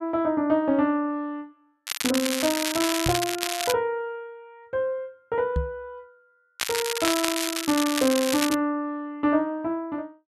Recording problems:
crackling; from 2 to 3.5 s and from 6.5 to 8.5 s; loose cable, SNR 2 dB
microphone bump; at 3 s and at 5.5 s; peak +3 dB vs average level

